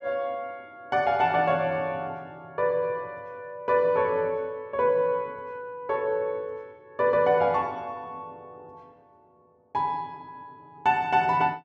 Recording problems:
none

